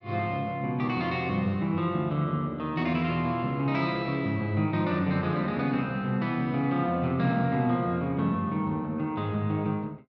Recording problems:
none

